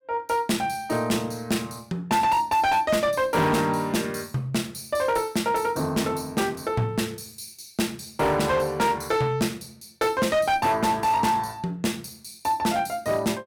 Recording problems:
distortion; hard clipping, signal-to-distortion ratio 11 dB

